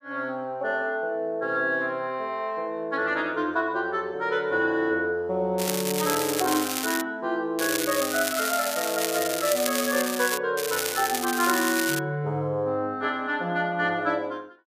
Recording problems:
crackle; from 5.5 to 7 s, from 7.5 to 10 s and from 11 to 12 s; loose cable, SNR 3 dB

